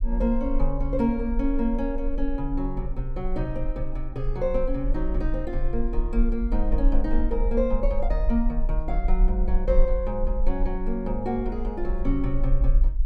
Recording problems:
rumble; below 40 Hz, SNR 1 dB

